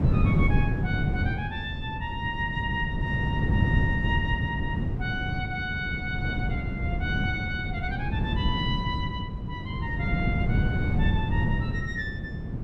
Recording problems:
wind on the microphone; below 190 Hz, SNR -4 dB

